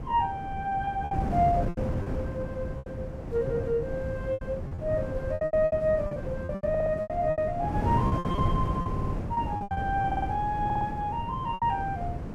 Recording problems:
wind on the microphone; below 280 Hz, SNR 4 dB
lost packets; 13% of the sound replaced, filled with repeated pitch periods
stutter; 4 times, first at 6.5 s

